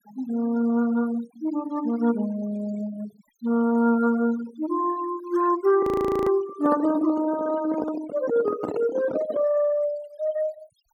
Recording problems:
denoising artefacts; signal-to-artefact ratio 18 dB
frozen audio; at 6 s
microphone handling noise; from 6.5 to 9.5 s; peak 0 dB vs average level

